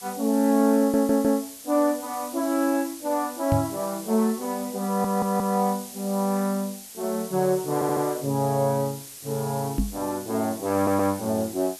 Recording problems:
hiss; SNR 14 dB
stutter; 4 times, first at 1 s
knock on the microphone; at 3.5 s and at 10 s; peak +4 dB vs average level

